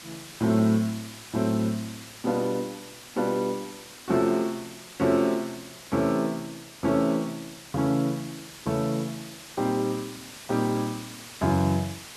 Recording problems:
hiss; slope 0 dB per octave, SNR 15 dB

